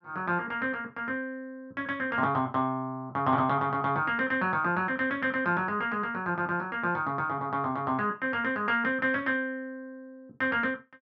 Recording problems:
treble cut off; nothing above 8 kHz

